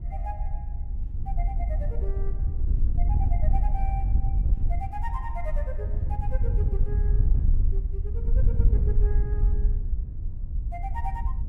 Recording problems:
low-frequency rumble; below 84 Hz, SNR 5 dB
wind on the microphone; below 66 Hz, SNR -13 dB

